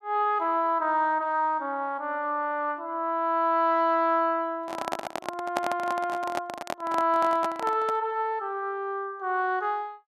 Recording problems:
microphone handling noise; from 4.5 to 8 s; peak +2 dB vs average level

